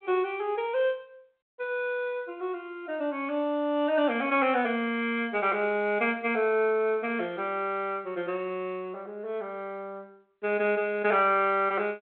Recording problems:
telephone audio; 190 Hz to 3.9 kHz, G.726

